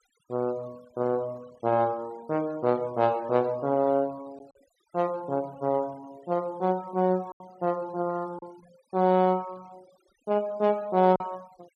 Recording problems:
denoising artefacts; signal-to-artefact ratio 26 dB
lost packets; 1.7% of the sound replaced, filled with silence

